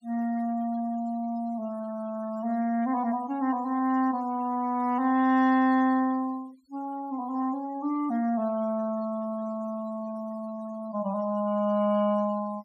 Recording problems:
denoising artefacts; signal-to-artefact ratio 24 dB

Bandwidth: 14.5 kHz